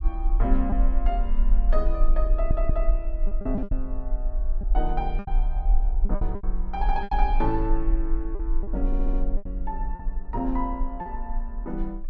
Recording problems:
rumble; below 40 Hz, strongest tone 22 Hz, SNR -4 dB
packet loss; 7% of the sound replaced, filled with repeated pitch periods
stutter; at 2.5 s and at 9 s

